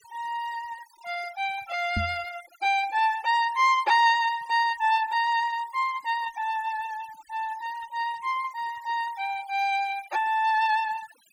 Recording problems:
noise reduction artefacts; signal-to-artefact ratio 21 dB
knock on the microphone; at 2 s; peak 0 dB vs average level

